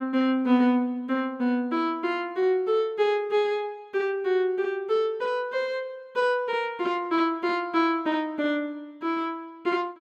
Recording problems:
none

